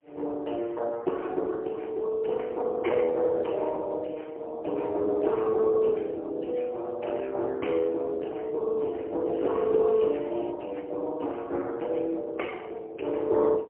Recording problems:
telephone audio; 280 Hz to 3.1 kHz, AMR-NB, then MP3
crackle; from 9.5 to 11 s; loose cable, SNR 27 dB

